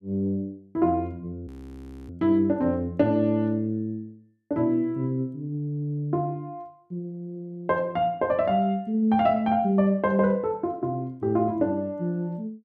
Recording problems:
audio freezing; at 1.5 s for 0.5 s

